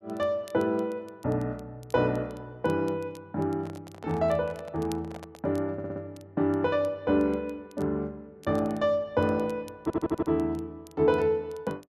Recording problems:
crackle; vinyl, SNR 28 dB
microphone handling noise; from 3.5 to 5.5 s; peak -10 dB vs average level
stutter; at 5.5 s and at 10 s

